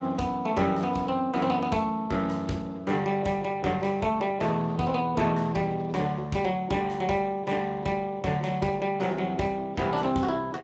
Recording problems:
lossy codec; Speex, log-spectral distance 3 dB, nothing above 7.3 kHz

